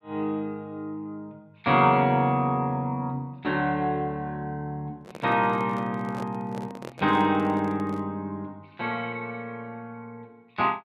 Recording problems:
microphone handling noise; from 5 to 8 s; peak -8 dB vs average level

